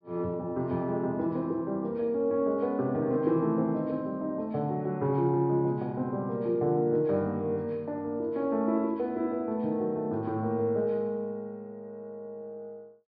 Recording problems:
low-pass filter; nothing above 5.5 kHz

